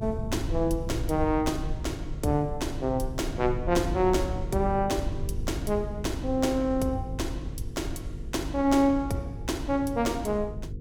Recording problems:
electrical hum; 50 Hz, harmonics up to 500 Hz, SNR 12 dB
rumble; below 96 Hz, SNR 9 dB

